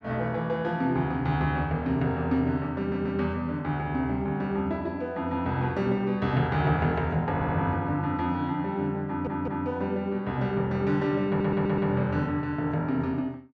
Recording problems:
audio stuttering; 4 times, first at 3 s

